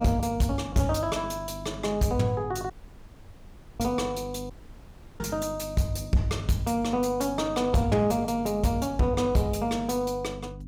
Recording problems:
distorted audio; soft clipping, signal-to-distortion ratio 11 dB
hum; 50 Hz, harmonics up to 300 Hz, SNR 14 dB
dropout; at 2.5 s for 1 s and at 4.5 s for 0.5 s

